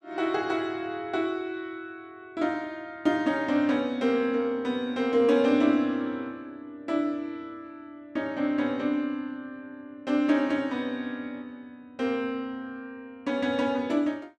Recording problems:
none

